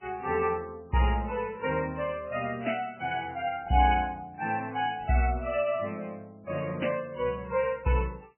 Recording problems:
lossy compression; MP3, log-spectral distance 3 dB, nothing above 2.7 kHz

